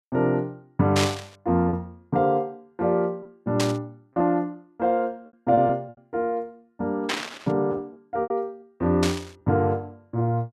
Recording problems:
lost packets; 4% of the sound replaced, filled with repeated pitch periods
burst of static; 4 times, first at 1 s; peak +4 dB vs average level

